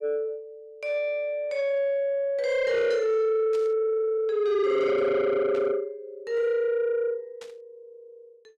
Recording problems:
distorted audio; soft clipping, signal-to-distortion ratio 11 dB
static burst; at 3.5 s, at 5.5 s and at 7.5 s; peak -16 dB vs average level

